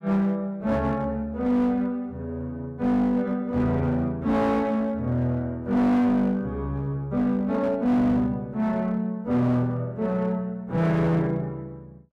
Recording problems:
distortion; hard clipping, uneven, signal-to-distortion ratio 10 dB

